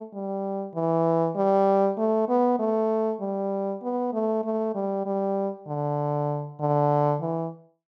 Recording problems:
none

